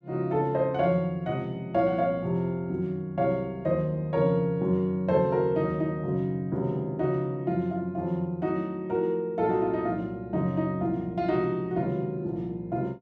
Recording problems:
none

